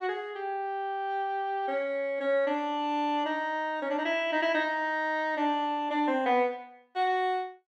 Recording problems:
none

